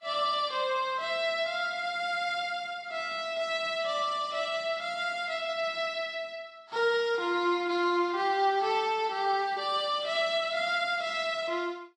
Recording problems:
lossy codec; Vorbis, log-spectral distance 3 dB

